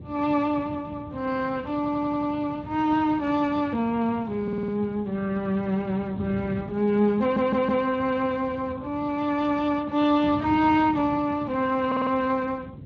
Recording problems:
codec artefacts; Vorbis, then Speex, log-spectral distance 3 dB
wind noise; below 240 Hz, SNR 14 dB
stutter; 4 times, first at 2 s

